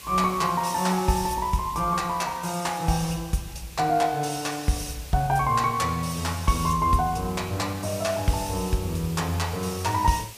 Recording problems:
background hiss; SNR 17 dB

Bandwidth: 15 kHz